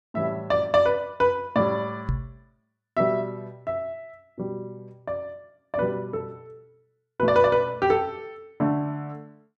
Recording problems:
microphone bump; at 2 s; peak +2 dB vs average level

